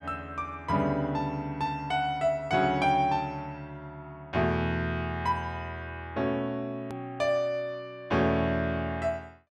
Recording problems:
hard cut with a click; at 7 s

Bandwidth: 12.5 kHz